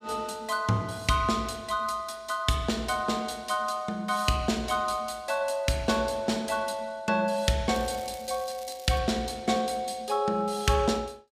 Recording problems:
crackle; from 7.5 to 9 s; loose cable, SNR 19 dB

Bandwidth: 15 kHz